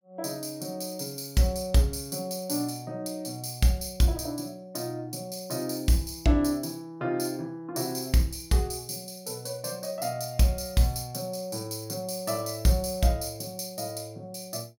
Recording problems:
none

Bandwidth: 16.5 kHz